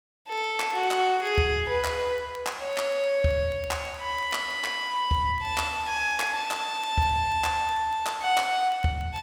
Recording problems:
crackling; vinyl, SNR 29 dB

